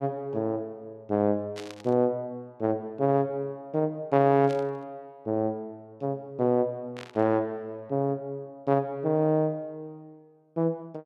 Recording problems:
static burst; at 1.5 s, at 4.5 s and at 7 s; peak -9 dB vs average level

